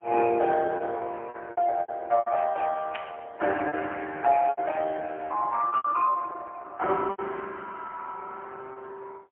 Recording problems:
telephone audio; 320 Hz to 3.1 kHz, AMR-NB, then MP3
lost packets; 10% of the sound replaced, filled with repeated pitch periods
static burst; at 3 s; peak -2 dB vs average level

